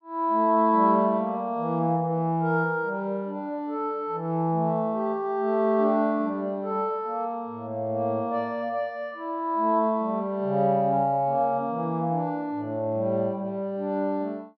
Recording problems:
treble missing; nothing above 5.5 kHz

